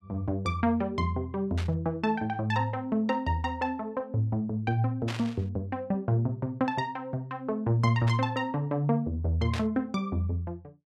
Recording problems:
burst of static; 4 times, first at 1.5 s; peak -4 dB vs average level

